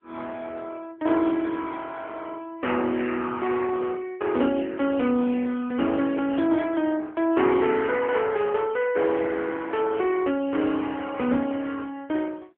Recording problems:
telephone audio; 220 Hz to 3.4 kHz, AMR-NB

